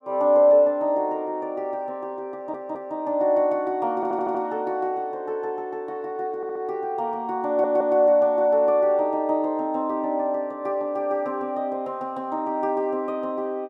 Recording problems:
stutter; 4 times, first at 2.5 s

